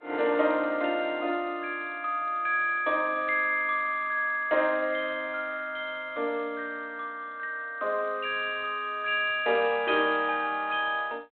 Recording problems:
telephone audio; 280 Hz to 3.4 kHz, G.726

